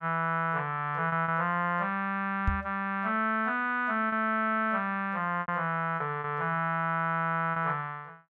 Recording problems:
lost packets; 4% of the sound replaced, filled with repeated pitch periods
knock on the microphone; at 2.5 s; peak +4 dB vs average level

